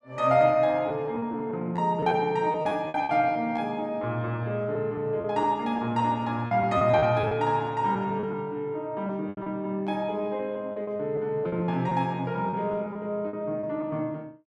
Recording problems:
packet loss; 9% of the sound replaced, filled with repeated pitch periods

